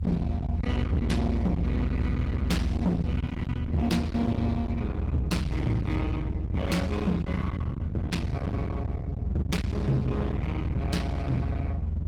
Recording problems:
lossy compression; Opus, log-spectral distance 2 dB, nothing above 18.3 kHz
distorted audio; hard clipping, uneven, signal-to-distortion ratio 7 dB
low-frequency rumble; below 170 Hz, SNR 1 dB

